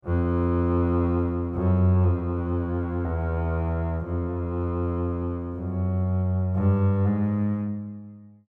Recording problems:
none

